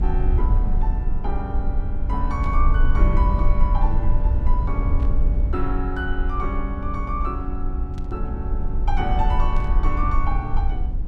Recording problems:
hum; 60 Hz, harmonics up to 300 Hz, SNR 11 dB
low-frequency rumble; below 56 Hz, SNR -6 dB
static burst; 4 times, first at 2.5 s; peak -13 dB vs average level

